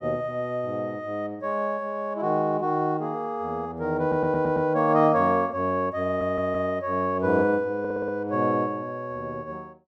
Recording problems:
audio stuttering; at 4 s, at 6 s and at 8 s

